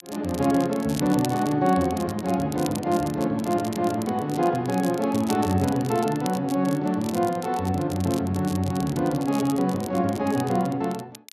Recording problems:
crackle; vinyl, SNR 16 dB

